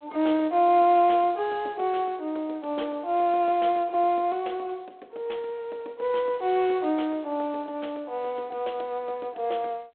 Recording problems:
telephone audio; 280 Hz to 3.7 kHz, G.726

